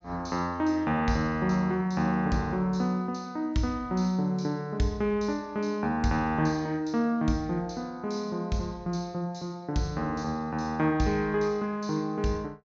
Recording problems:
low-pass filter; nothing above 8 kHz

